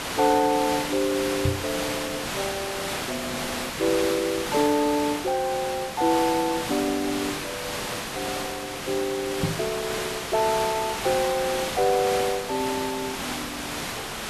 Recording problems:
hiss; slope -2 dB per octave, SNR 4 dB
knock on the microphone; at 1.5 s and at 9.5 s; peak +4 dB vs average level

